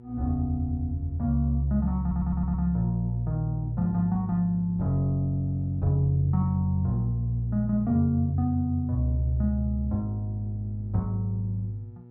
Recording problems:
electrical hum; 60 Hz, harmonics up to 840 Hz, SNR 22 dB
stutter; at 2 s

